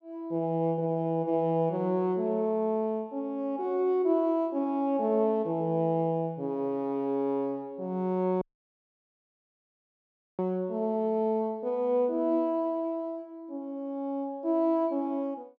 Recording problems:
dropout; at 8.5 s for 2 s

